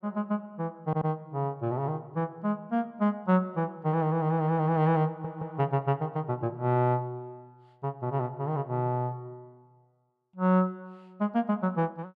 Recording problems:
stutter; at 1 s and at 5 s

